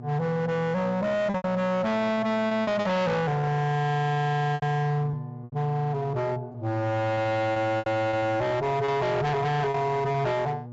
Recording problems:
treble cut off; nothing above 8 kHz
distortion; hard clipping, uneven, signal-to-distortion ratio 6 dB
electrical hum; 60 Hz, harmonics up to 1.4 kHz, SNR 16 dB
lost packets; 7% of the sound replaced, filled with repeated pitch periods

